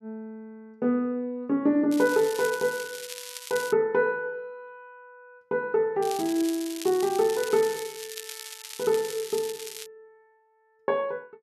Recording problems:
crackle; from 2 to 3.5 s and from 6 to 10 s; loose cable, SNR 12 dB

